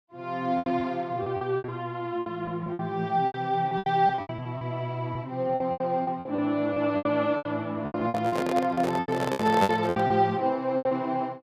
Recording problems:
packet loss; 17% of the sound replaced, filled with repeated pitch periods
handling noise; from 8 to 10 s; peak +4 dB vs average level

